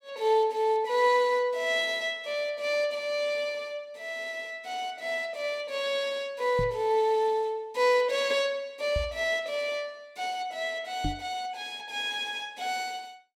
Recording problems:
microphone bump; at 6.5 s, at 9 s and at 11 s; peak 0 dB vs average level

